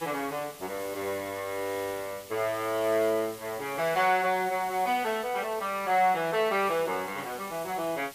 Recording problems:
background hiss; slope 0 dB per octave, SNR 16 dB

